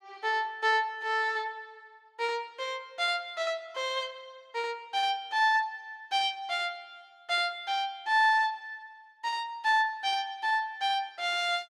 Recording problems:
none

